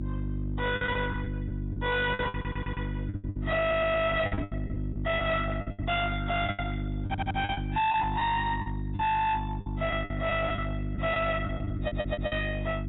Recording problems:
lossy compression; AAC, log-spectral distance 3 dB, nothing above 3.5 kHz
distortion; hard clipping, uneven, signal-to-distortion ratio 7 dB
mains hum; 50 Hz, harmonics up to 700 Hz, SNR 4 dB
packet loss; 12% of the sound replaced, filled with the last packet
audio stuttering; 4 times, first at 2.5 s
microphone bump; at 4.5 s; peak 0 dB vs average level

